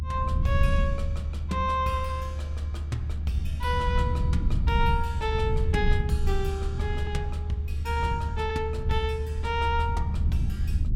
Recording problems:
rumble; below 86 Hz, SNR -2 dB

